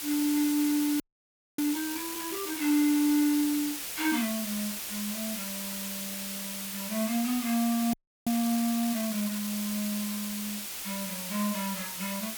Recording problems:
hiss; slope +1 dB per octave, SNR 4 dB
frozen audio; at 1 s for 0.5 s and at 8 s

